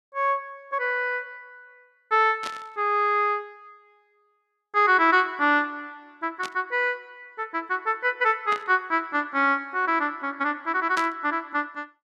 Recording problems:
burst of static; 4 times, first at 2.5 s; peak -5 dB vs average level

